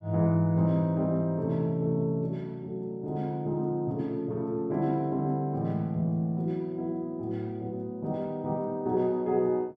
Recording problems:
none

